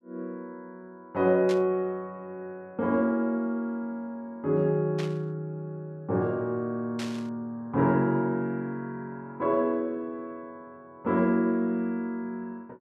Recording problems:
static burst; at 1.5 s, at 5 s and at 7 s; peak -6 dB vs average level

